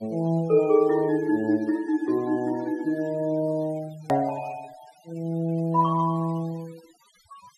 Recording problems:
noise reduction artefacts; signal-to-artefact ratio 24 dB
click at an edit; at 4 s

